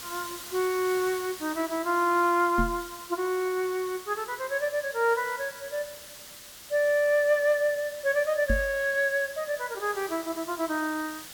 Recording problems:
background hiss; slope +1 dB per octave, SNR 14 dB
knock on the microphone; at 2.5 s and at 8.5 s; peak +2 dB vs average level

